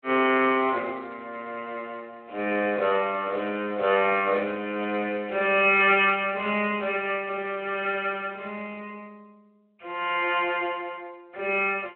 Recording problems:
phone line; 320 Hz to 3.1 kHz, Speex

